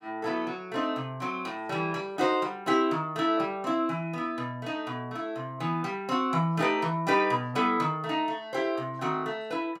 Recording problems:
none

